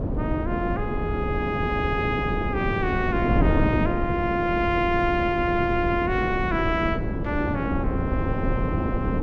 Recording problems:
wind noise; below 320 Hz, SNR 1 dB

